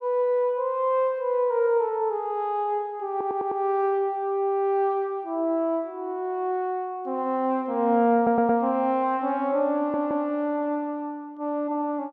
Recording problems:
stutter; at 3 s, at 8 s and at 10 s

